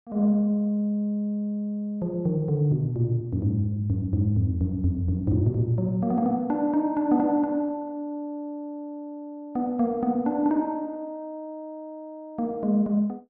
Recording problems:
none

